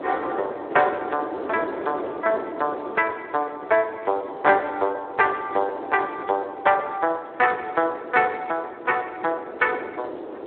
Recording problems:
telephone audio; 300 Hz to 3.8 kHz, Speex
wind noise; below 650 Hz, SNR 11 dB

